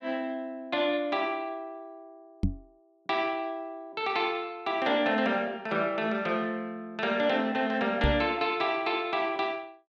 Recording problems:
knock on the microphone; at 2.5 s and at 8 s; peak +5 dB vs average level

